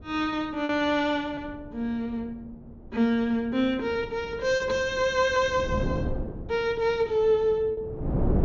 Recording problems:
low-pass filter; nothing above 7.3 kHz
wind on the microphone; below 290 Hz, SNR 10 dB
packet loss; 3% of the sound replaced, filled with repeated pitch periods

